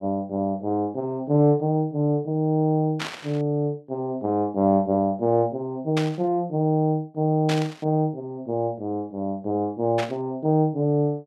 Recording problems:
static burst; 4 times, first at 3 s; peak -2 dB vs average level

